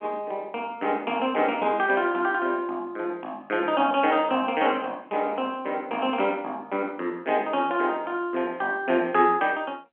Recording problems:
telephone audio; 190 Hz to 3.3 kHz, G.711

